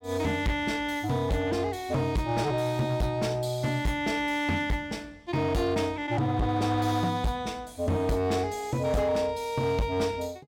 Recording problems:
distorted audio; hard clipping, signal-to-distortion ratio 11 dB

